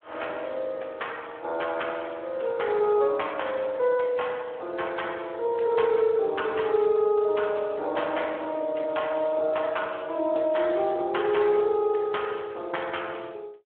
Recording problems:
phone line; 340 Hz to 3.4 kHz, Speex

